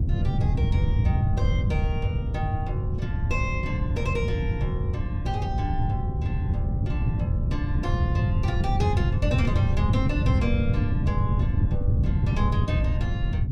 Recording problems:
wind noise; below 130 Hz, SNR -8 dB

